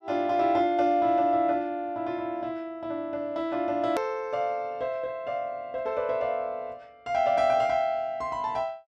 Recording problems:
hard cut with a click; at 4 s

